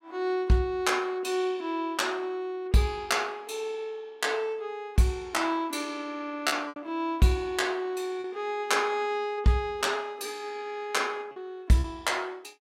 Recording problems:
lost packets; 1.9% of the sound replaced, filled with repeated pitch periods

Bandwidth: 16 kHz